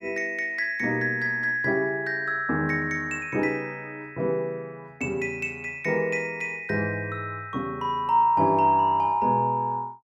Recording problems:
none

